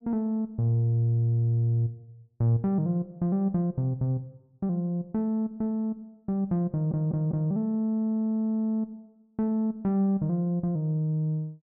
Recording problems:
stutter; at 6.5 s

